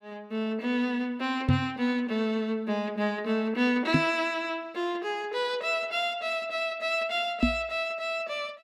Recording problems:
microphone bump; at 1.5 s, at 4 s and at 7.5 s; peak +8 dB vs average level

